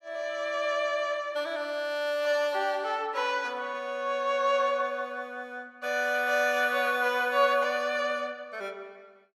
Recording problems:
none

